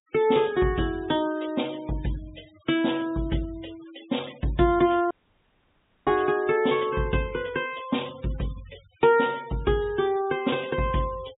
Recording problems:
low-pass filter; nothing above 4 kHz
denoising artefacts; signal-to-artefact ratio 22 dB
audio cutting out; at 5 s for 1 s

